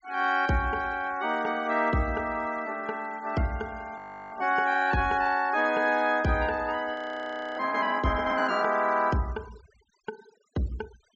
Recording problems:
treble cut off; nothing above 8 kHz
denoising artefacts; signal-to-artefact ratio 23 dB
audio freezing; at 4 s and at 7 s for 0.5 s

